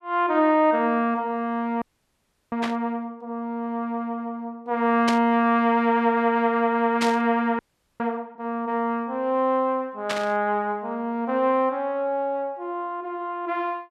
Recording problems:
audio freezing; at 2 s for 0.5 s and at 7.5 s
burst of static; 4 times, first at 2.5 s; peak +1 dB vs average level

